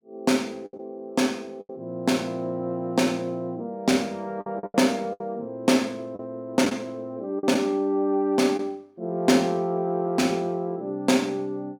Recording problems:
lost packets; 5% of the sound replaced, filled with the last packet

